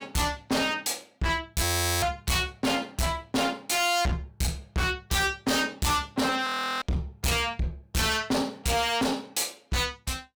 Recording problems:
distortion; hard clipping, signal-to-distortion ratio 6 dB
audio freezing; at 1.5 s and at 6.5 s

